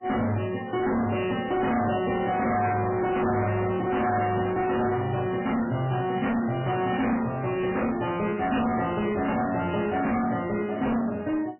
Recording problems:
codec artefacts; MP3, log-spectral distance 5 dB, nothing above 2.6 kHz
distortion; hard clipping, signal-to-distortion ratio 6 dB

